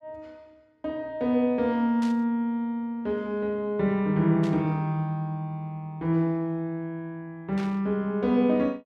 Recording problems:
static burst; at 2 s, at 4.5 s and at 7.5 s; peak -11 dB vs average level

